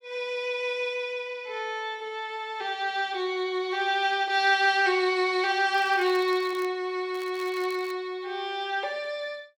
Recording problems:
crackling; at 5.5 s and at 7 s; loose cable, SNR 23 dB

